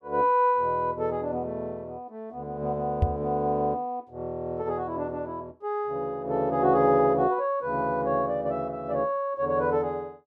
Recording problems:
microphone thump; at 3 s; peak +6 dB vs average level

